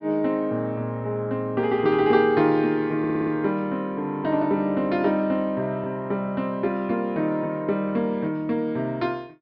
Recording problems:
treble cut off; nothing above 5.5 kHz
audio stuttering; at 3 s

